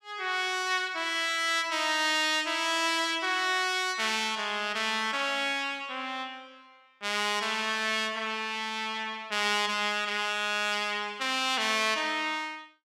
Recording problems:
none

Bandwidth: 16.5 kHz